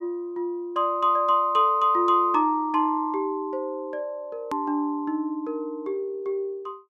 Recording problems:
hard cut with a click; at 4.5 s

